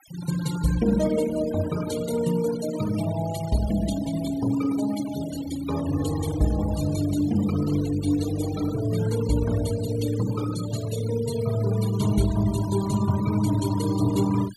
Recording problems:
noise reduction artefacts; signal-to-artefact ratio 13 dB

